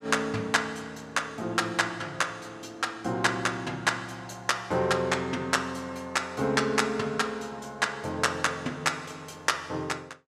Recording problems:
none

